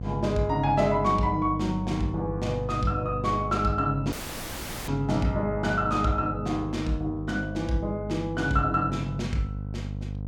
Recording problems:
hum; 50 Hz, harmonics up to 550 Hz, SNR 8 dB
dropout; at 4 s for 1 s

